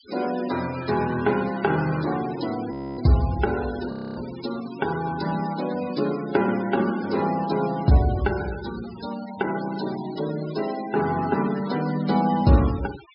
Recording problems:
low-pass filter; nothing above 5.5 kHz
denoising artefacts; signal-to-artefact ratio 15 dB
frozen audio; at 2.5 s and at 4 s

